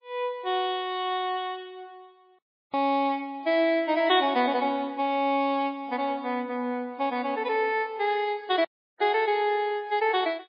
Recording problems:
lossy codec; MP3, log-spectral distance 2 dB, nothing above 5 kHz
audio cutting out; at 2.5 s and at 8.5 s

